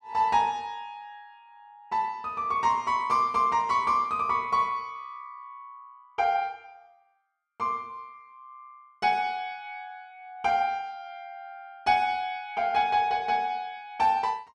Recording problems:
none

